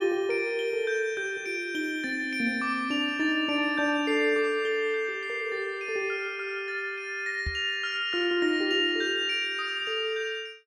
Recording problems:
knock on the microphone; at 7.5 s; peak -2 dB vs average level

